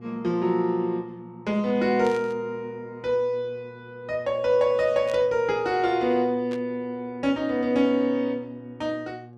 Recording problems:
mains hum; 60 Hz, harmonics up to 1.2 kHz, SNR 22 dB
burst of static; at 2 s, at 5 s and at 6.5 s; peak -11 dB vs average level

